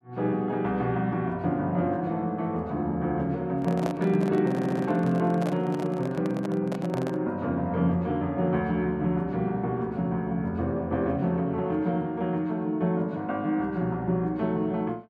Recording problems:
microphone handling noise; from 3.5 to 7 s; peak -1 dB vs average level
stutter; at 4.5 s

